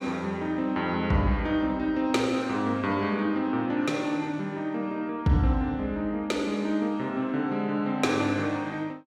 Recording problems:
none

